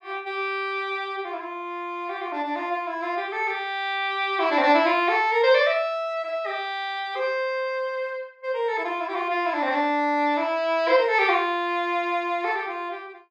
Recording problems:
none

